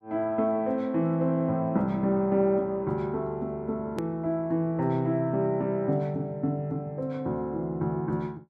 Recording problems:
hard cut with a click; at 4 s

